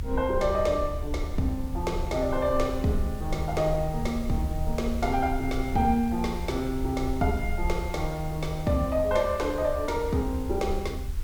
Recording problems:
background hiss; slope -1 dB per octave, SNR 20 dB
low-frequency rumble; below 72 Hz, SNR 8 dB

